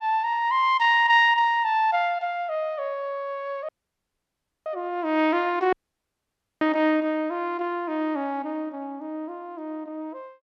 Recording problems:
audio cutting out; at 3.5 s for 1 s and at 5.5 s for 1 s

